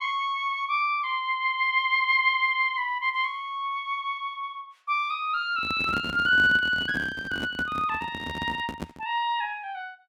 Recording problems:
microphone handling noise; from 5.5 to 9 s; peak -4 dB vs average level

